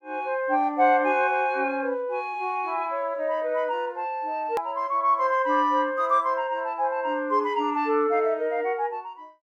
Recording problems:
edit click; at 4.5 s

